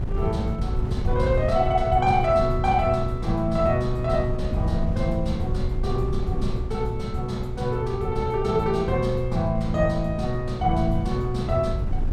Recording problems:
wind noise; below 100 Hz, SNR 5 dB

